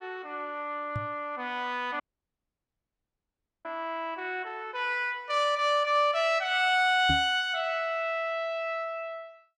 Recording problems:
microphone thump; at 1 s and at 7 s; peak 0 dB vs average level
audio cutting out; at 2 s for 1.5 s

